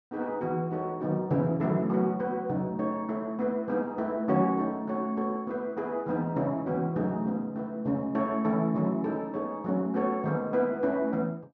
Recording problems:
treble missing; nothing above 6.5 kHz

